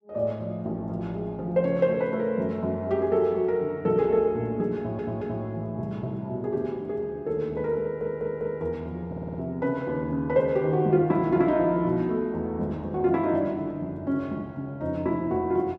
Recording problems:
stutter; at 5 s, at 8 s and at 9 s

